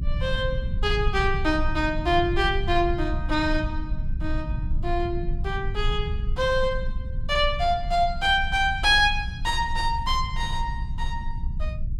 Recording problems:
low-frequency rumble; below 74 Hz, strongest tone 22 Hz, SNR 6 dB

